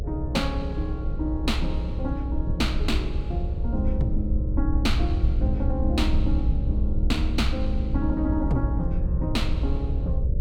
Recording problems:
electrical hum; 50 Hz, harmonics up to 600 Hz, SNR 12 dB
low-frequency rumble; below 74 Hz, SNR -2 dB

